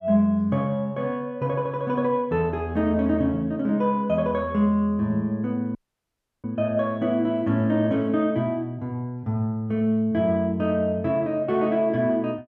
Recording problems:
audio cutting out; at 6 s for 0.5 s

